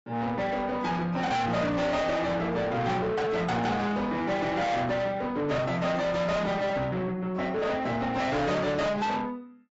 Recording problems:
lossy compression; AAC, log-spectral distance 2 dB, nothing above 7.6 kHz
distorted audio; soft clipping, signal-to-distortion ratio 7 dB

